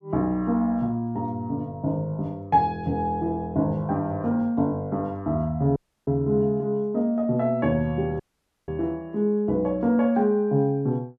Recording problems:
audio cutting out; at 6 s and at 8 s

